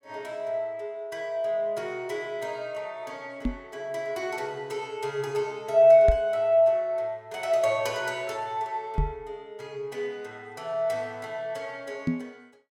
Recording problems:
knock on the microphone; 4 times, first at 3.5 s; peak +5 dB vs average level

